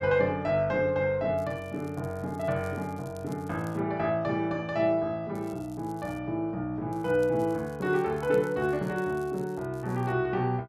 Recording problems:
crackling; from 1.5 to 4 s, at 5.5 s and from 7 to 10 s; loose cable, SNR 27 dB

